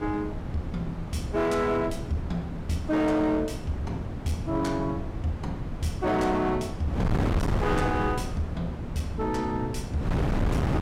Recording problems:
distortion; hard clipping, signal-to-distortion ratio 11 dB
wind on the microphone; below 300 Hz, SNR 3 dB

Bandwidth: 16 kHz